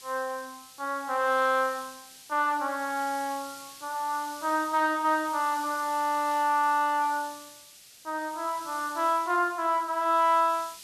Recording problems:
background hiss; SNR 18 dB

